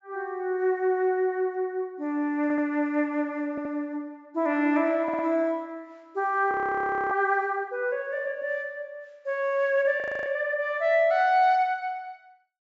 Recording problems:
treble cut off; nothing above 7.5 kHz
stutter; at 2.5 s, at 3.5 s and at 5 s
frozen audio; at 6.5 s for 0.5 s and at 10 s

